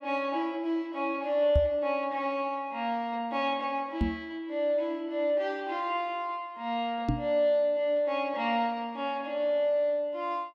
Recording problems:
microphone bump; at 1.5 s, at 4 s and at 7 s; peak +6 dB vs average level

